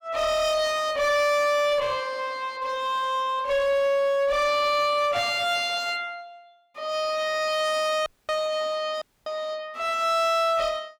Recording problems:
distorted audio; hard clipping, uneven, signal-to-distortion ratio 6 dB
dropout; at 8 s and at 9 s

